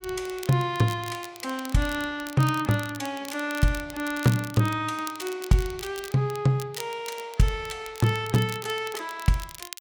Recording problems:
crackle; vinyl, SNR 15 dB

